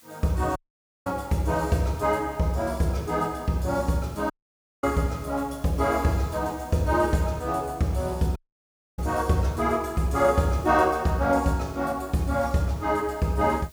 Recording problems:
background hiss; slope 0 dB per octave, SNR 26 dB
audio cutting out; at 0.5 s for 0.5 s, at 4.5 s for 0.5 s and at 8.5 s for 0.5 s

